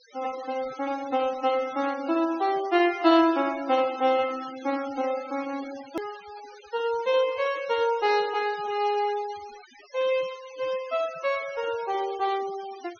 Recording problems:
treble missing; nothing above 6.5 kHz
denoising artefacts; signal-to-artefact ratio 18 dB
click at an edit; at 6 s

